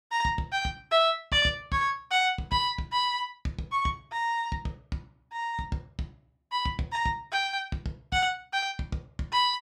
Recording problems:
none

